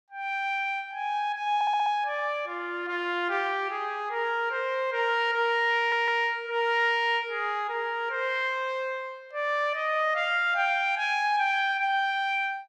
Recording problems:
stutter; at 1.5 s and at 6 s

